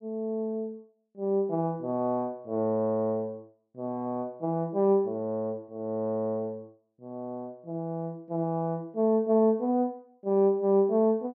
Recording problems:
none

